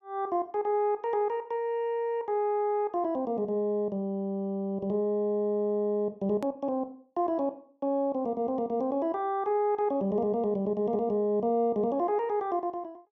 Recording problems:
hard cut with a click; at 6.5 s

